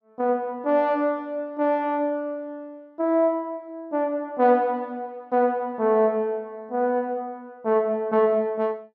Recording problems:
none

